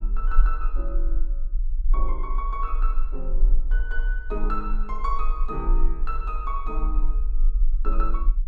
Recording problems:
rumble; below 36 Hz, strongest tone 22 Hz, SNR -6 dB

